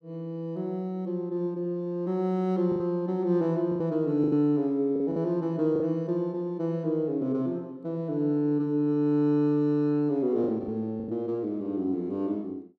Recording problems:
lost packets; 4% of the sound replaced, filled with the last packet

